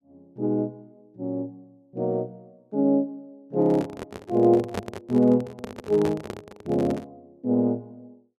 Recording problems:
handling noise; from 3.5 to 7 s; peak 0 dB vs average level

